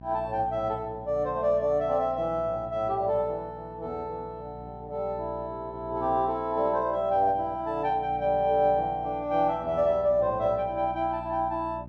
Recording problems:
mains hum; 60 Hz, harmonics up to 660 Hz, SNR 18 dB

